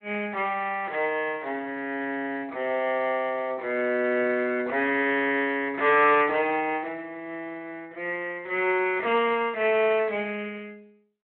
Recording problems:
telephone audio; 300 Hz to 3.2 kHz, Speex

